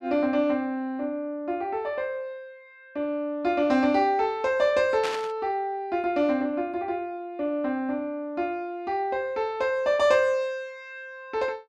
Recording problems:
burst of static; at 5 s; peak -2 dB vs average level

